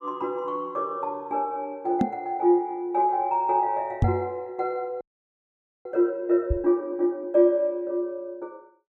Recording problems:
microphone thump; at 2 s, at 4 s and at 6.5 s; peak +7 dB vs average level
audio freezing; at 5 s for 1 s

